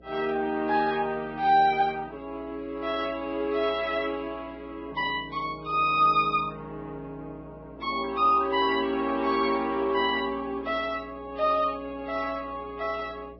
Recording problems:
codec artefacts; Vorbis, log-spectral distance 2 dB, nothing above 5 kHz
hum; 60 Hz, harmonics up to 660 Hz, SNR 23 dB

